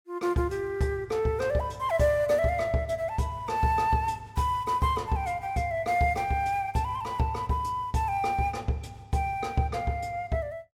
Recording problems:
none

